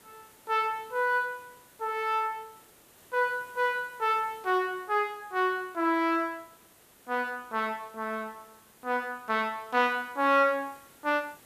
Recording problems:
hiss; slope -4 dB per octave, SNR 26 dB

